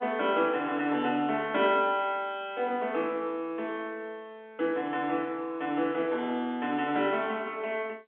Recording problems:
telephone audio; 220 Hz to 3.6 kHz, G.711

